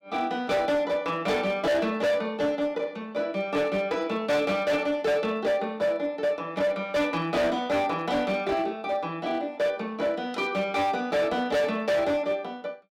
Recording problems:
distorted audio; hard clipping, signal-to-distortion ratio 8 dB

